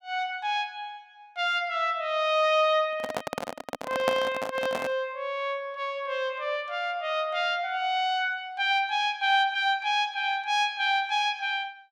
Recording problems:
microphone handling noise; from 3 to 5 s; peak +3 dB vs average level

